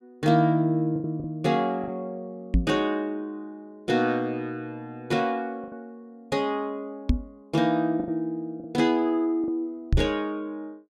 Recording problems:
packet loss; 4% of the sound replaced, filled with the last packet
knock on the microphone; at 2.5 s, at 7 s and at 10 s; peak +8 dB vs average level

